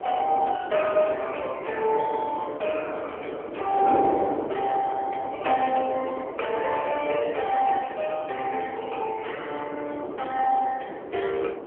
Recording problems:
phone line; 280 Hz to 3.3 kHz, AMR-NB
hiss; SNR 41 dB
wind on the microphone; below 670 Hz, SNR 8 dB

